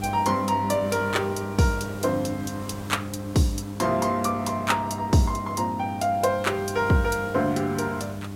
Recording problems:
electrical hum; 50 Hz, harmonics up to 800 Hz, SNR 10 dB
background hiss; slope -4 dB per octave, SNR 19 dB

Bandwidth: 16 kHz